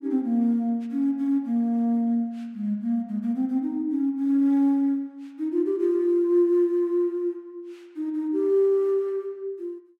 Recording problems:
none

